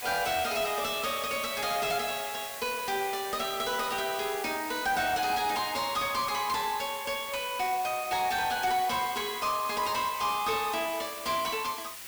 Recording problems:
distorted audio; soft clipping, signal-to-distortion ratio 11 dB
hiss; slope +1 dB per octave, SNR 9 dB

